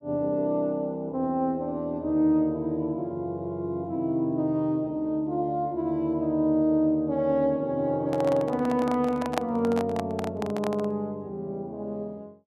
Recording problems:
microphone handling noise; from 8 to 11 s; peak +3 dB vs average level

